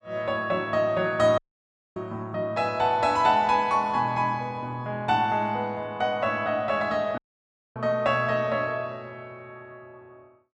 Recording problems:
dropout; at 1.5 s for 0.5 s and at 7 s for 0.5 s

